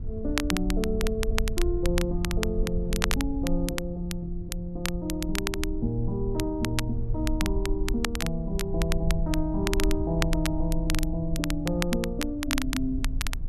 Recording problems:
low-frequency rumble; below 62 Hz, SNR 3 dB
crackle; vinyl, SNR 5 dB

